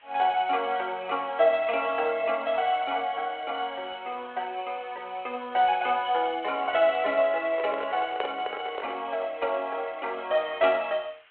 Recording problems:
telephone audio; 340 Hz to 3.3 kHz, G.726
background hiss; SNR 29 dB
microphone handling noise; from 7.5 to 9 s; peak 0 dB vs average level

